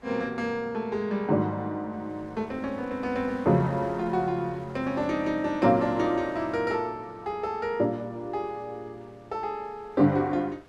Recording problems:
wind on the microphone; below 1.5 kHz, SNR 23 dB

